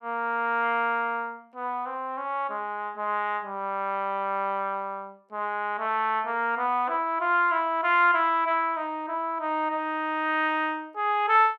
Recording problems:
none

